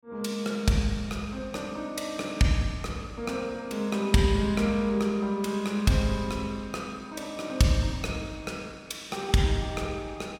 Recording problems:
none

